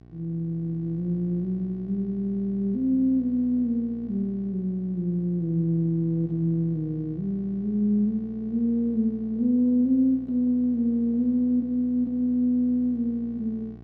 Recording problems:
hum; 60 Hz, harmonics up to 840 Hz, SNR 20 dB

